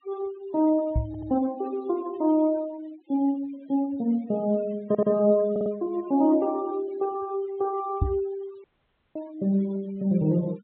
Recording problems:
low-pass filter; nothing above 4 kHz
noise reduction artefacts; signal-to-artefact ratio 23 dB
microphone thump; at 1 s and at 8 s; peak +5 dB vs average level
stutter; at 1 s, at 5 s and at 5.5 s
audio cutting out; at 8.5 s for 0.5 s

